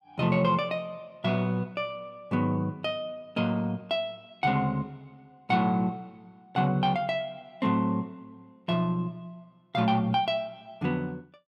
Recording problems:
none

